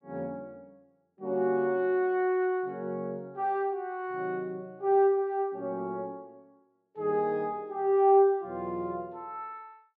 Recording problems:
none

